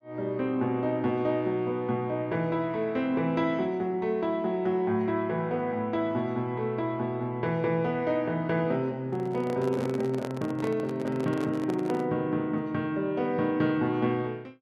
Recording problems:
microphone handling noise; from 9 to 12 s; peak -4 dB vs average level

